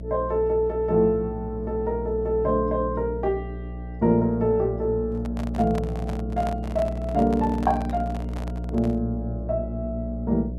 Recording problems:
electrical hum; 60 Hz, harmonics up to 660 Hz, SNR 8 dB
handling noise; from 5 to 9 s; peak -5 dB vs average level

